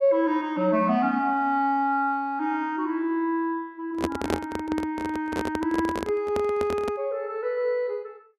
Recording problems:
handling noise; from 4 to 7 s; peak +4 dB vs average level

